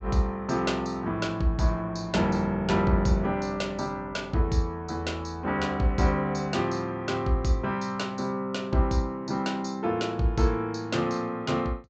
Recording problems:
treble missing; nothing above 8 kHz

